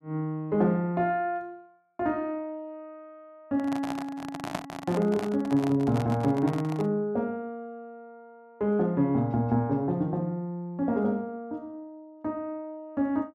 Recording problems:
handling noise; from 3.5 to 7 s; peak +1 dB vs average level

